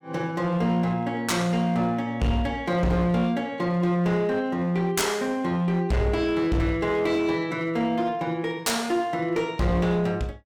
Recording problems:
distorted audio; hard clipping, uneven, signal-to-distortion ratio 11 dB

